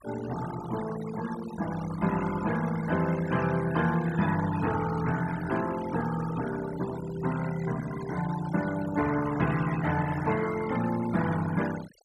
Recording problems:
denoising artefacts; signal-to-artefact ratio 13 dB

